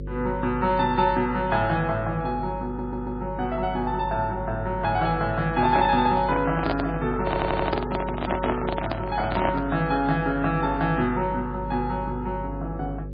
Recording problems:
lossy codec; MP3, log-spectral distance 2 dB, nothing above 4.2 kHz
hum; 50 Hz, harmonics up to 550 Hz, SNR 10 dB
audio stuttering; at 2.5 s and at 7.5 s
microphone handling noise; from 5.5 to 9.5 s; peak +2 dB vs average level

